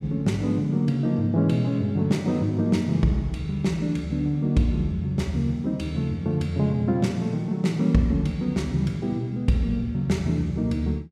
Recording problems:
none

